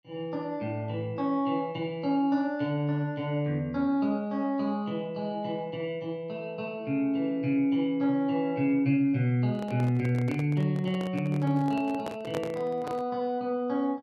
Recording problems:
microphone handling noise; from 9.5 to 13 s; peak -3 dB vs average level

